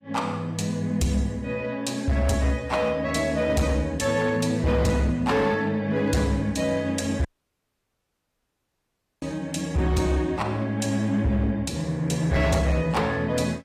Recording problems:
lossy codec; AAC, log-spectral distance 2 dB
distortion; hard clipping, signal-to-distortion ratio 12 dB
dropout; at 7.5 s for 2 s

